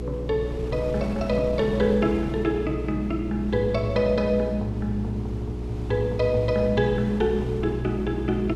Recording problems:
electrical hum; 60 Hz, harmonics up to 420 Hz, SNR 7 dB
wind noise; below 540 Hz, SNR 14 dB

